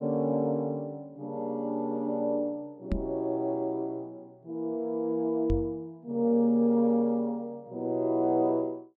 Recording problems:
microphone thump; at 3 s and at 5.5 s; peak +2 dB vs average level

